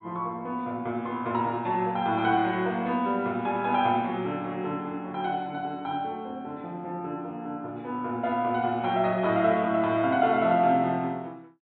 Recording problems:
low-pass filter; nothing above 4 kHz

